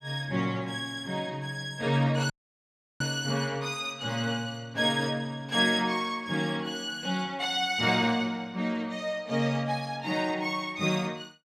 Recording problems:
audio cutting out; at 2.5 s for 0.5 s

